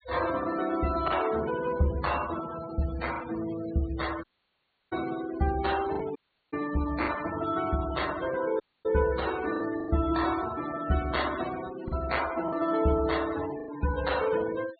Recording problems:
treble cut off; nothing above 4.4 kHz
denoising artefacts; signal-to-artefact ratio 12 dB
lost packets; 3% of the sound replaced, filled with the last packet
dropout; at 4 s for 0.5 s, at 6 s and at 8.5 s

